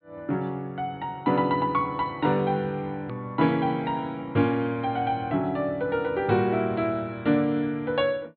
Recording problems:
treble cut off; nothing above 4.5 kHz
edit click; at 3 s

